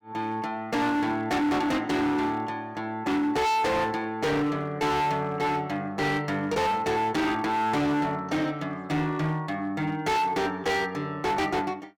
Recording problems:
distortion; hard clipping, signal-to-distortion ratio 6 dB

